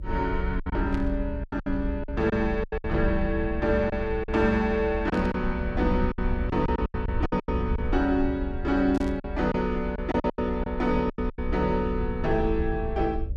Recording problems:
hum; 50 Hz, harmonics up to 600 Hz, SNR 28 dB
low-frequency rumble; below 68 Hz, SNR 6 dB
lost packets; 10% of the sound replaced, filled with silence
static burst; at 1 s, at 5 s and at 9 s; peak -12 dB vs average level

